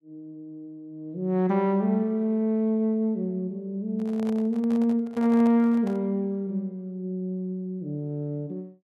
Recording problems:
handling noise; from 4 to 6 s; peak -11 dB vs average level

